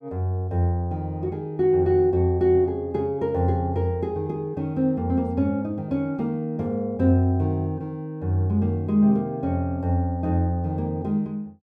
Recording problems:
none

